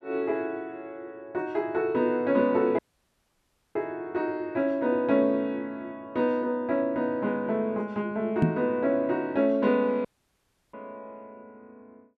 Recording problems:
dropout; at 3 s for 1 s and at 10 s for 0.5 s
microphone thump; at 8.5 s; peak +7 dB vs average level

